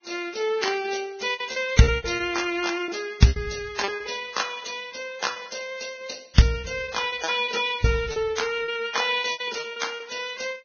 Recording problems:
lossy codec; Vorbis, log-spectral distance 7 dB, nothing above 6.5 kHz
lost packets; 11% of the sound replaced, filled with repeated pitch periods

